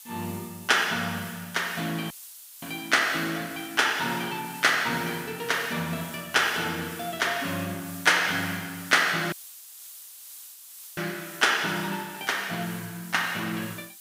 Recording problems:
hiss; slope +5 dB per octave, SNR 15 dB
audio cutting out; at 2 s for 0.5 s and at 9.5 s for 1.5 s

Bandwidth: 15.5 kHz